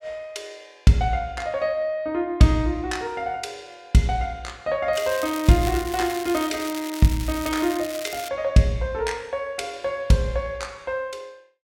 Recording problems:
crackle; from 5 to 8.5 s; loose cable, SNR 12 dB

